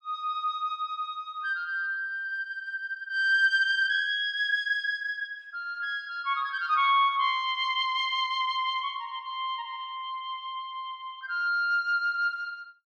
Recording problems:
none

